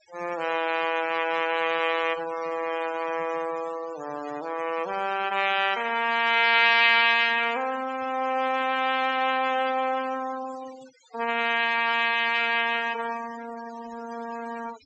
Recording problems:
treble missing; nothing above 8 kHz
denoising artefacts; signal-to-artefact ratio 17 dB

